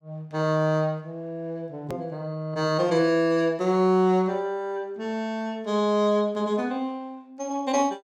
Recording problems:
hard cut with a click; at 2 s

